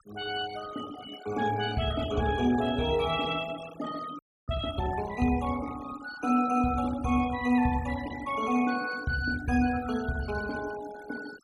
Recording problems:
denoising artefacts; signal-to-artefact ratio 15 dB
frozen audio; at 4 s

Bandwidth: 14 kHz